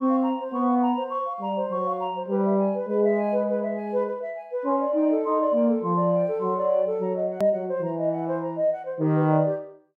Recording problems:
click at an edit; at 7.5 s

